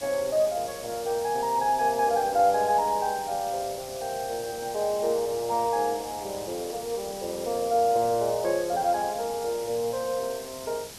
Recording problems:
hiss; SNR 13 dB

